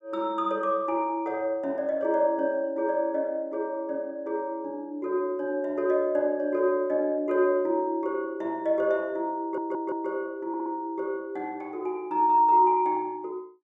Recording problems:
audio stuttering; at 9.5 s and at 10 s

